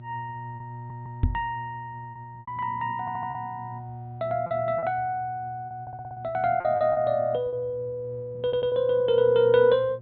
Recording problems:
treble cut off; nothing above 4 kHz
electrical hum; 60 Hz, harmonics up to 600 Hz, SNR 17 dB
lost packets; 6% of the sound replaced, filled with repeated pitch periods
stutter; 4 times, first at 1 s
knock on the microphone; at 1 s; peak +6 dB vs average level

